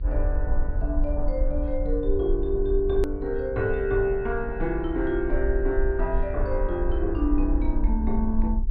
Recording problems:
treble missing; nothing above 4.9 kHz
electrical hum; 60 Hz, harmonics up to 420 Hz, SNR 20 dB
rumble; below 52 Hz, SNR 3 dB
edit click; at 3 s

